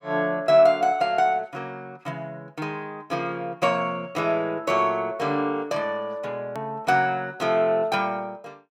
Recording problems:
hard cut with a click; at 6.5 s

